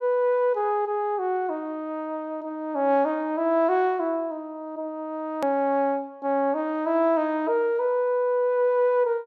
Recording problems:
edit click; at 5.5 s

